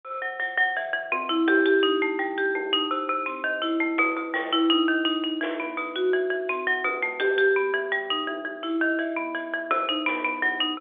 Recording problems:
telephone audio; 300 Hz to 3.5 kHz, G.711

